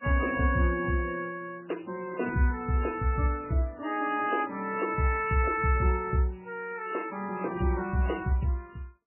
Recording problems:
lossy codec; MP3, then MP3, log-spectral distance 4 dB

